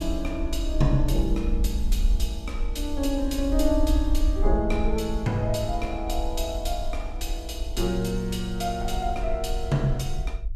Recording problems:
low-frequency rumble; below 56 Hz, SNR 2 dB

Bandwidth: 15 kHz